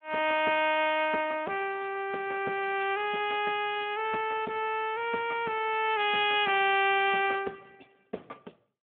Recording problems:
telephone audio; 280 Hz to 3.5 kHz, Speex

